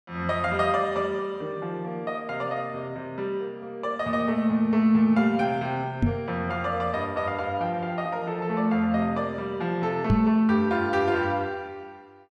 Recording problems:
microphone thump; at 6 s and at 10 s; peak +8 dB vs average level

